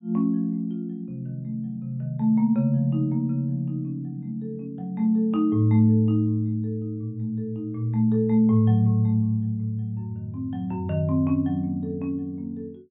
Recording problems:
treble cut off; nothing above 4 kHz

